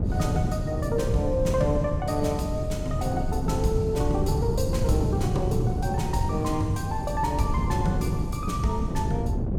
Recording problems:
wind on the microphone; below 180 Hz, SNR 0 dB

